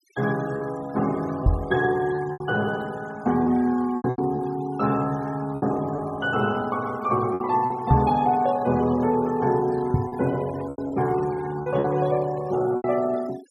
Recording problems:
noise reduction artefacts; signal-to-artefact ratio 21 dB
packet loss; 6% of the sound replaced, filled with repeated pitch periods
knock on the microphone; at 1.5 s, at 8 s and at 10 s; peak +10 dB vs average level

